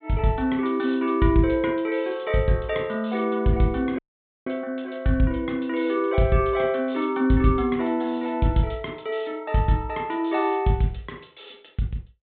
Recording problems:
low-pass filter; nothing above 4 kHz
dropout; at 4 s

